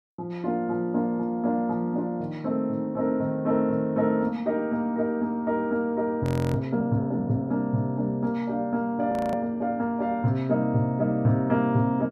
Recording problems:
frozen audio; at 6 s and at 9 s

